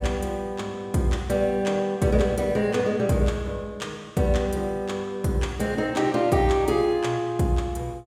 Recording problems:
none

